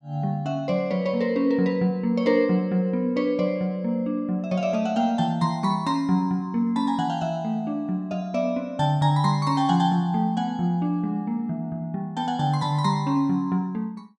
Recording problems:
none

